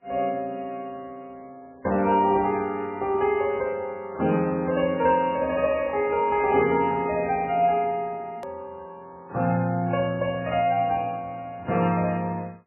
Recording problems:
codec artefacts; AAC, then MP3, log-spectral distance 2 dB, nothing above 2.5 kHz
edit click; at 8.5 s

